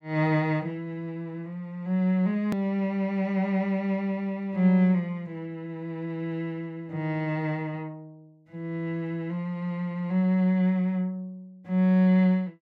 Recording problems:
edit click; at 2.5 s

